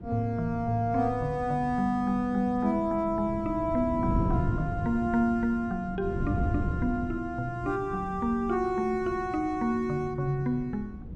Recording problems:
wind on the microphone; below 200 Hz, SNR 8 dB

